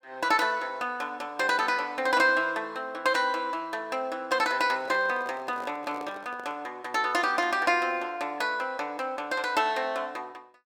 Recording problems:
handling noise; from 4.5 to 6.5 s; peak -10 dB vs average level

